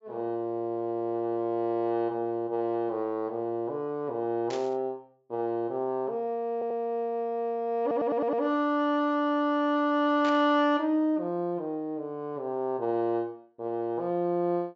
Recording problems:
low-pass filter; nothing above 8 kHz
burst of static; at 4.5 s and at 10 s; peak -7 dB vs average level
stutter; at 6.5 s and at 8 s

